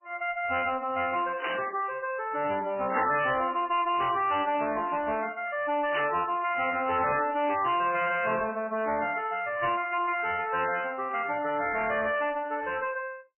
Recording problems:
codec artefacts; MP3, log-spectral distance 5 dB, nothing above 2.9 kHz
distorted audio; hard clipping, uneven, signal-to-distortion ratio 9 dB
burst of static; at 1.5 s, at 3 s and at 6 s; peak +2 dB vs average level

